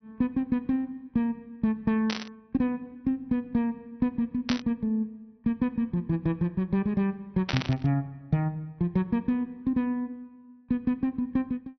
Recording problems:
treble cut off; nothing above 6 kHz
static burst; at 2 s, at 4.5 s and at 7.5 s; peak +2 dB vs average level

